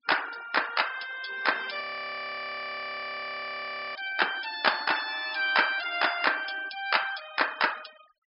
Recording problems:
treble cut off; nothing above 5.5 kHz
denoising artefacts; signal-to-artefact ratio 17 dB
audio freezing; at 2 s for 2 s

